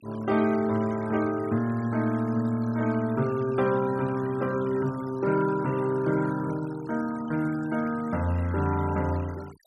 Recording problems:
denoising artefacts; signal-to-artefact ratio 20 dB

